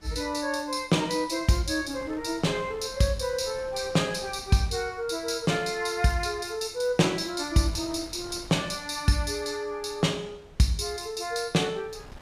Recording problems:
wind on the microphone; below 860 Hz, SNR 23 dB

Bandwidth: 15 kHz